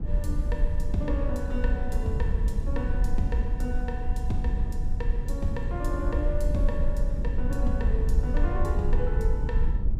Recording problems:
rumble; below 64 Hz, SNR -5 dB

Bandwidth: 15.5 kHz